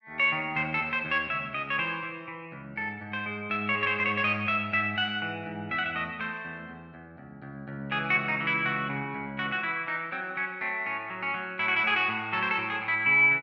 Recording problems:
none

